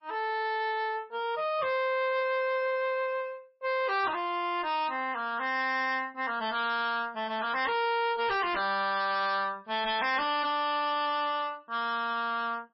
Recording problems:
lossy compression; MP3, log-spectral distance 2 dB, nothing above 5.3 kHz
distorted audio; hard clipping, signal-to-distortion ratio 10 dB

